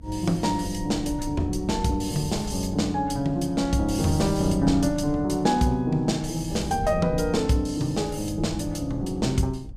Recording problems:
low-frequency rumble; below 110 Hz, SNR 13 dB

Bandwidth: 15 kHz